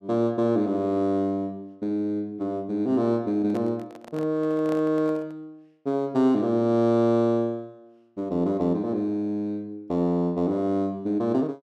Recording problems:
microphone handling noise; from 3.5 to 5.5 s; peak -9 dB vs average level

